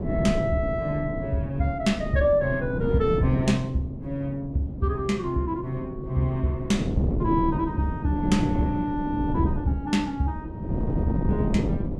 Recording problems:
wind noise; below 270 Hz, SNR 4 dB

